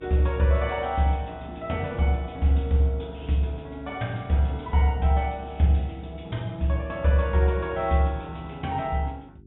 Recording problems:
low-pass filter; nothing above 3.7 kHz
hum; 50 Hz, harmonics up to 400 Hz, SNR 25 dB

